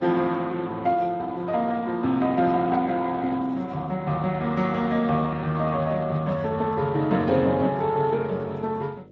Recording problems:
lossy codec; Speex, log-spectral distance 3 dB
hum; 50 Hz, harmonics up to 650 Hz, SNR 26 dB

